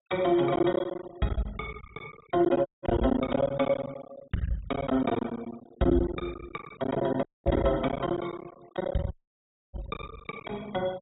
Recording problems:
treble missing; nothing above 4 kHz
noise reduction artefacts; signal-to-artefact ratio 24 dB
packet loss; 16% of the sound replaced, filled with silence
audio cutting out; at 2.5 s, at 7.5 s and at 9 s for 0.5 s

